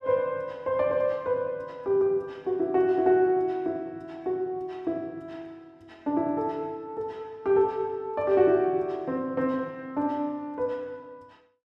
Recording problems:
none

